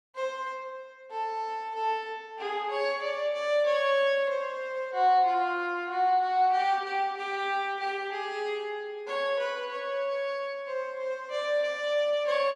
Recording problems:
none

